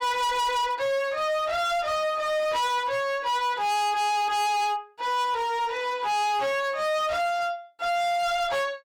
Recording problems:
distorted audio; hard clipping, signal-to-distortion ratio 6 dB

